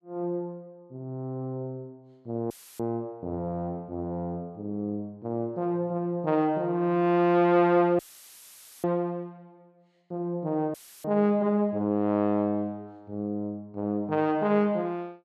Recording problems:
audio cutting out; at 2.5 s, at 8 s for 1 s and at 11 s; filled with static

